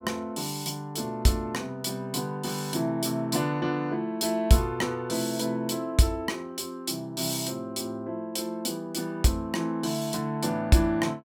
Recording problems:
none

